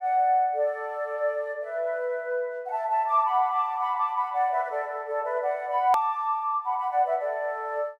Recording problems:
edit click; at 6 s

